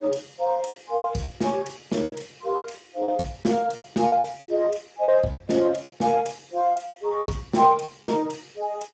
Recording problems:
lossy codec; Speex, log-spectral distance 5 dB, nothing above 7.8 kHz
packet loss; 14% of the sound replaced, filled with repeated pitch periods

